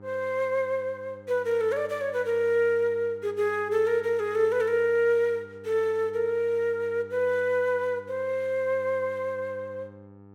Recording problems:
hum; 50 Hz, harmonics up to 1.3 kHz, SNR 23 dB

